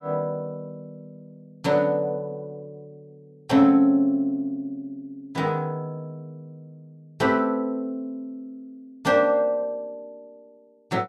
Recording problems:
none

